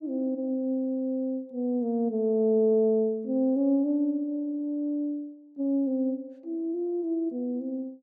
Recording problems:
none

